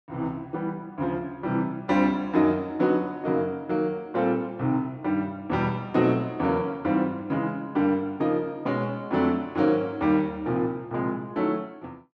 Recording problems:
none

